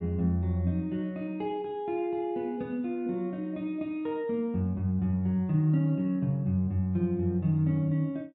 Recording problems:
none

